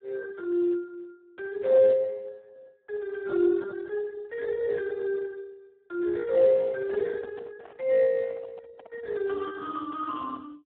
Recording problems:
phone line; 300 Hz to 2 kHz, Speex
handling noise; from 6.5 to 9.5 s; peak -13 dB vs average level

